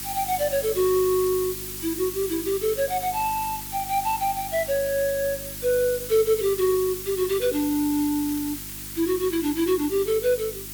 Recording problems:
electrical hum; 50 Hz, harmonics up to 350 Hz, SNR 19 dB
hiss; slope +3 dB per octave, SNR 8 dB
crackle; from 2.5 to 5 s, at 6.5 s and from 8.5 to 9.5 s; loose cable, SNR 25 dB

